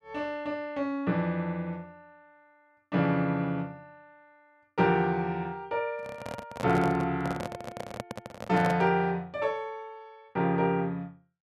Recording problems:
microphone handling noise; from 6 to 9 s; peak -1 dB vs average level

